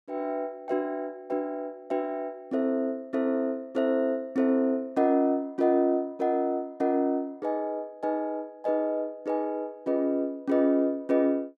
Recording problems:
none

